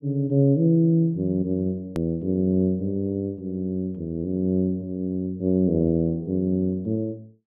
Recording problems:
edit click; at 2 s

